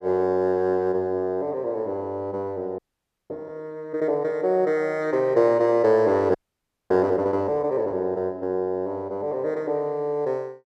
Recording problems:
audio freezing; at 3 s for 0.5 s and at 6.5 s for 0.5 s

